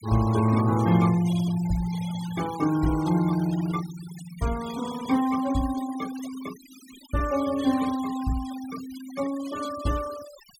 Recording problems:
denoising artefacts; signal-to-artefact ratio 16 dB

